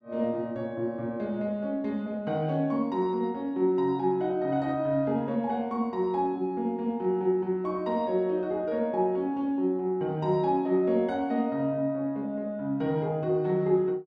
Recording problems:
none

